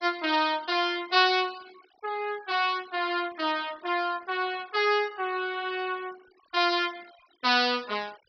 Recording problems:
treble cut off; nothing above 5.5 kHz
denoising artefacts; signal-to-artefact ratio 24 dB

